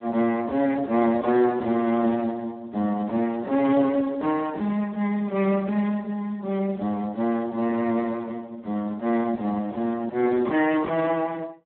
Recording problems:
phone line; 190 Hz to 2.5 kHz, Speex

